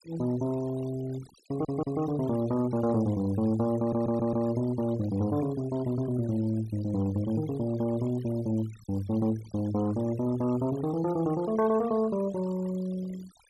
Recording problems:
noise reduction artefacts; signal-to-artefact ratio 20 dB
stutter; at 1.5 s and at 4 s

